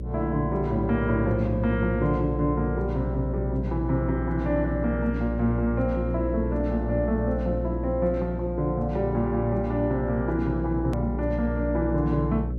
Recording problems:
electrical hum; 60 Hz, harmonics up to 600 Hz, SNR 4 dB
click at an edit; at 11 s

